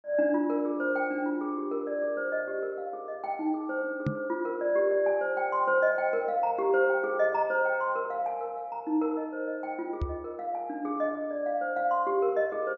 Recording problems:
treble cut off; nothing above 8 kHz
microphone bump; at 4 s and at 10 s; peak +3 dB vs average level

